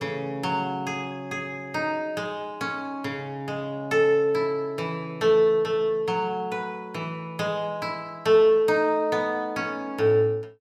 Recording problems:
none

